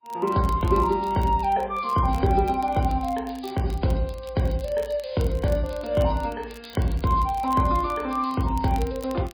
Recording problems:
codec artefacts; MP3, log-spectral distance 4 dB
crackle; vinyl, SNR 25 dB

